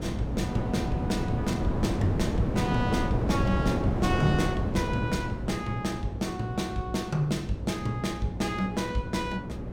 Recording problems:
hum; 60 Hz, harmonics up to 540 Hz, SNR 11 dB
wind on the microphone; below 360 Hz, SNR 0 dB

